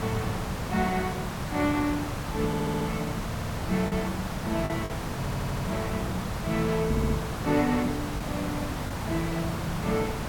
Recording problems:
hiss; SNR 2 dB
lost packets; 1.8% of the sound replaced, filled with the last packet
crackling; at 1.5 s and from 7 to 9.5 s; loose cable, SNR 29 dB
stutter; 4 times, first at 2.5 s
knock on the microphone; at 7 s; peak +4 dB vs average level

